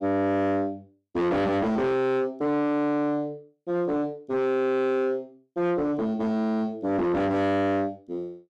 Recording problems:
distortion; soft clipping, signal-to-distortion ratio 8 dB

